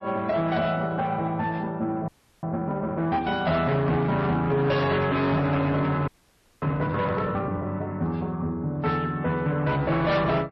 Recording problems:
codec artefacts; MP3, then MP3, log-spectral distance 2 dB, nothing above 5.7 kHz
distorted audio; soft clipping, signal-to-distortion ratio 10 dB
audio freezing; at 2 s and at 6 s for 0.5 s

